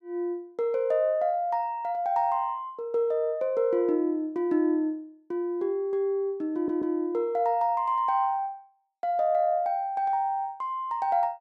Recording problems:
stutter; at 6.5 s

